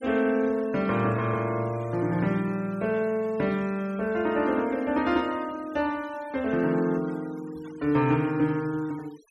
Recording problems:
noise reduction artefacts; signal-to-artefact ratio 23 dB

